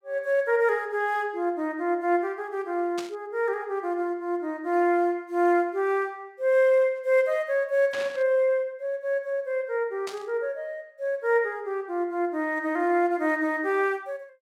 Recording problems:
static burst; at 3 s, at 8 s and at 10 s; peak -7 dB vs average level

